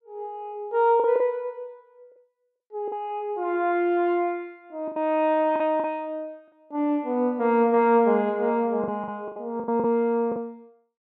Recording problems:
packet loss; 7% of the sound replaced, filled with the last packet

